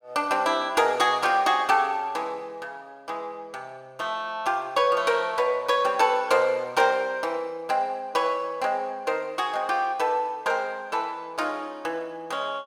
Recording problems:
none

